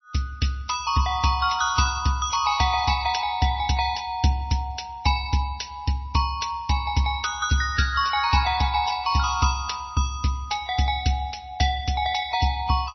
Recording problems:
lossy codec; MP3, log-spectral distance 4 dB, nothing above 5.8 kHz

